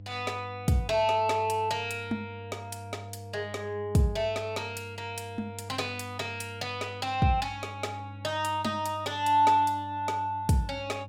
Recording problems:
electrical hum; 50 Hz, harmonics up to 500 Hz, SNR 15 dB

